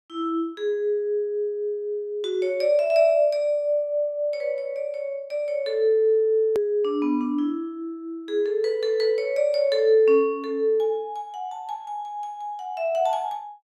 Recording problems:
click at an edit; at 6.5 s

